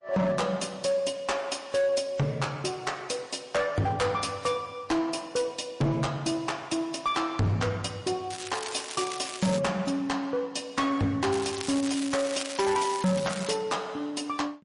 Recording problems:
codec artefacts; MP3, log-spectral distance 5 dB, nothing above 10.1 kHz
distorted audio; hard clipping, signal-to-distortion ratio 7 dB
crackling; from 8.5 to 9.5 s and from 11 to 14 s; loose cable, SNR 9 dB

